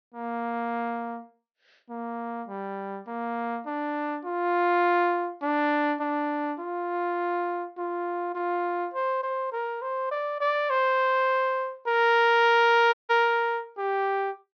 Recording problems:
treble missing; nothing above 6.2 kHz
audio cutting out; at 13 s

